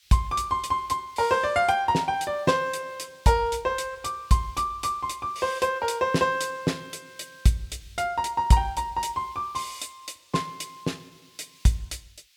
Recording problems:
hiss; SNR 28 dB

